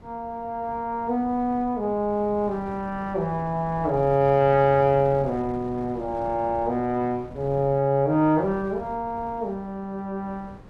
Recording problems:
wind noise; below 400 Hz, SNR 19 dB

